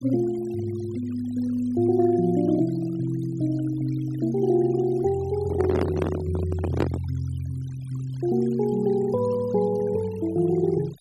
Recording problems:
denoising artefacts; signal-to-artefact ratio 20 dB
microphone handling noise; from 5.5 to 7 s; peak +4 dB vs average level

